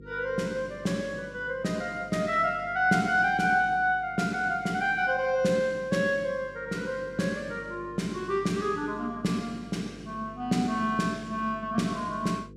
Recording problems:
mains hum; 50 Hz, harmonics up to 500 Hz, SNR 20 dB

